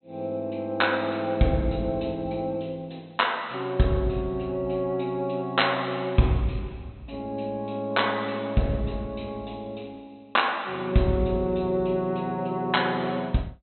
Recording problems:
treble missing; nothing above 4.1 kHz

